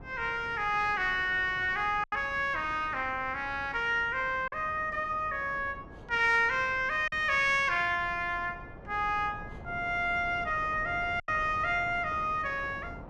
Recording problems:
wind on the microphone; below 550 Hz, SNR 18 dB
lost packets; 1.9% of the sound replaced, filled with silence

